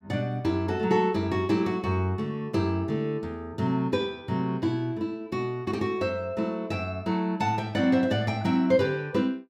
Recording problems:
none

